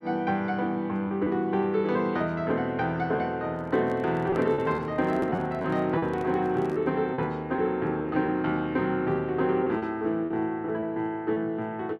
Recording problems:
lost packets; 5% of the sound replaced, filled with repeated pitch periods
microphone handling noise; from 3.5 to 7 s; peak -7 dB vs average level

